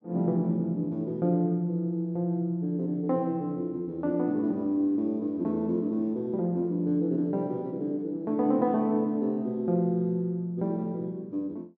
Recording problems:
treble missing; nothing above 7.3 kHz

